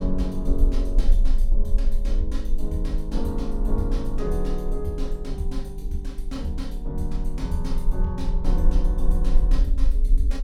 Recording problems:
low-frequency rumble; below 38 Hz, strongest tone 26 Hz, SNR -4 dB

